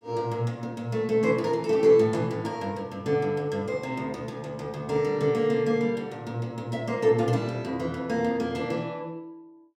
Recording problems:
none

